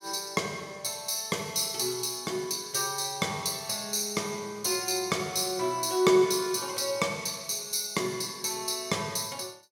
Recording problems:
none

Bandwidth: 16.5 kHz